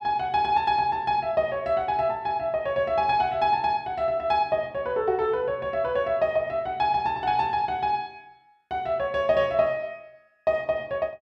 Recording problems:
none

